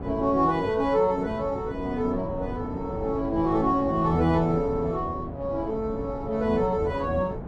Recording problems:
wind on the microphone; below 400 Hz, SNR 11 dB

